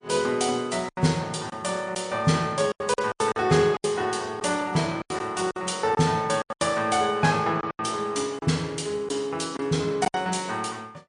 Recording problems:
lossy compression; MP3, log-spectral distance 4 dB, nothing above 9.5 kHz
lost packets; 9% of the sound replaced, filled with silence

